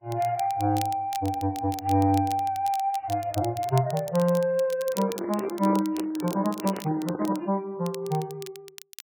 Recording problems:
codec artefacts; MP3, log-spectral distance 2 dB
crackle; vinyl, SNR 17 dB
handling noise; from 5 to 7.5 s; peak -3 dB vs average level

